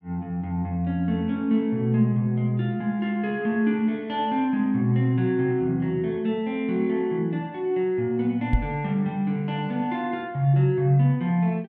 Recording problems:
knock on the microphone; at 8.5 s; peak +5 dB vs average level

